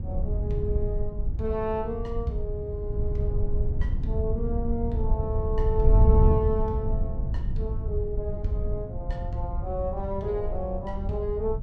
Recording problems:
wind on the microphone; below 88 Hz, SNR -3 dB

